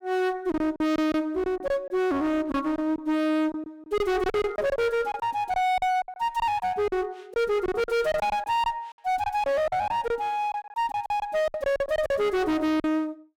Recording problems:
distorted audio; hard clipping, uneven, signal-to-distortion ratio 6 dB
lost packets; 11% of the sound replaced, filled with silence

